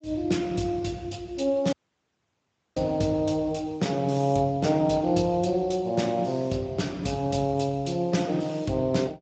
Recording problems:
lossy codec; Speex, log-spectral distance 4 dB, nothing above 7.6 kHz
dropout; at 1.5 s for 1 s

